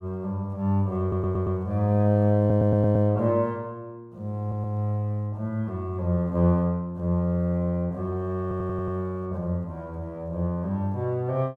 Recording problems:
stutter; 4 times, first at 1 s

